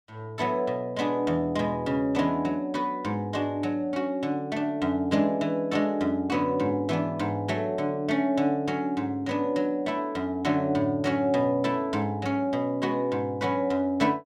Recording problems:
none

